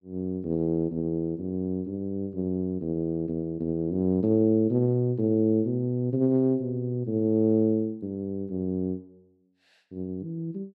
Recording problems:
none

